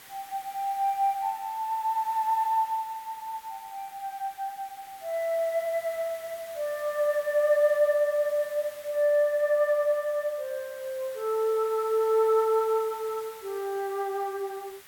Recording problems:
hiss; SNR 20 dB

